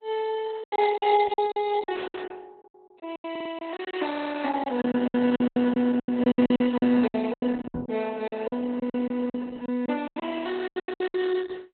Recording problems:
lossy codec; Opus, log-spectral distance 4 dB, nothing above 4 kHz
packet loss; 18% of the sound replaced, filled with silence
stutter; at 3.5 s and at 4 s
knock on the microphone; at 7.5 s; peak -3 dB vs average level

